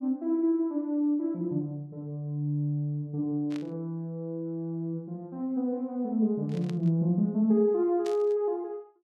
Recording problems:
burst of static; at 3.5 s, at 6.5 s and at 8 s; peak -11 dB vs average level

